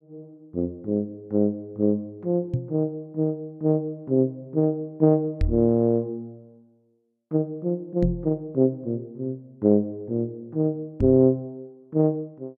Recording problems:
microphone bump; 4 times, first at 2.5 s; peak +4 dB vs average level

